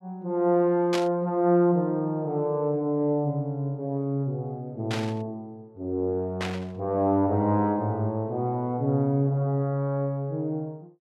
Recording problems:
static burst; at 1 s, at 5 s and at 6.5 s; peak -1 dB vs average level

